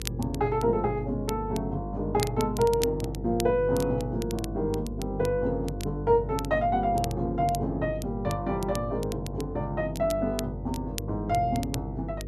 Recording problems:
electrical hum; 50 Hz, harmonics up to 500 Hz, SNR 9 dB
crackle; vinyl, SNR 15 dB

